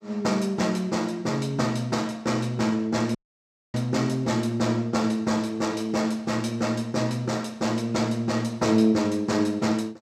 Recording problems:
dropout; at 3 s for 0.5 s

